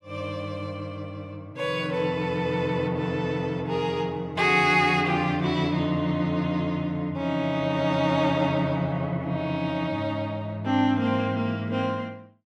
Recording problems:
none

